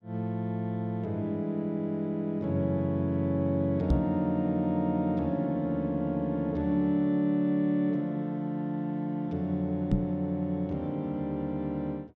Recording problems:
knock on the microphone; at 4 s and at 10 s; peak +6 dB vs average level

